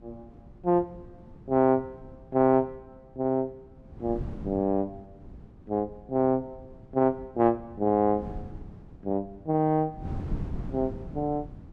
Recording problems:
wind on the microphone; below 210 Hz, SNR 15 dB

